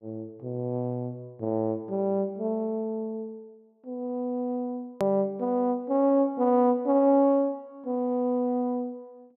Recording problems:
click at an edit; at 5 s

